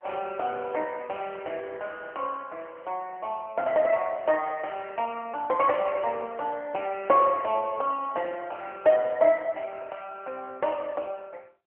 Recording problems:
phone line; 240 Hz to 2.9 kHz, AMR-NB

